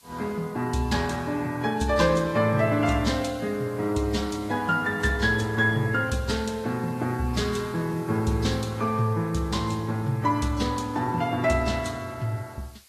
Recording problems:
codec artefacts; Vorbis, then AAC, log-spectral distance 4 dB
background hiss; slope +2 dB per octave, SNR 26 dB

